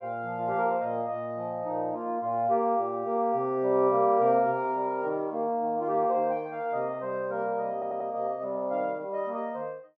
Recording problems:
stutter; at 7.5 s

